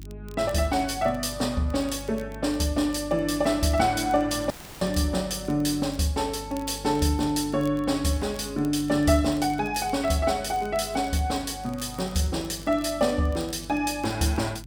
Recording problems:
hum; 50 Hz, harmonics up to 350 Hz, SNR 17 dB
crackle; vinyl, SNR 26 dB
dropout; at 4.5 s

